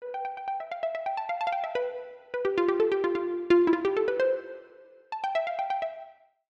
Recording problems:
none

